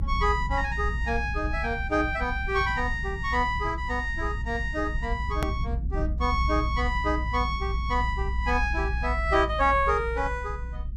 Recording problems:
low-frequency rumble; below 68 Hz, strongest tone 58 Hz, SNR 4 dB
edit click; at 5.5 s

